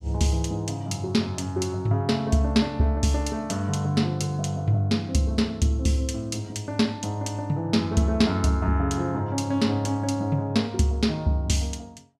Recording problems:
none

